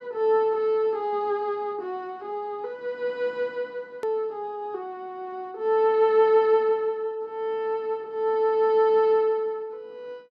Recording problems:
edit click; at 4 s

